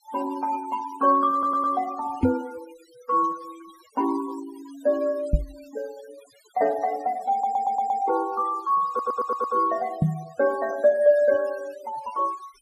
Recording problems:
denoising artefacts; signal-to-artefact ratio 21 dB
stutter; at 1.5 s, at 7.5 s and at 9 s
microphone thump; at 2 s, at 5.5 s and at 10 s; peak +7 dB vs average level

